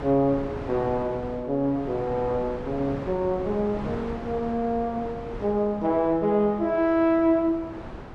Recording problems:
wind on the microphone; below 810 Hz, SNR 12 dB

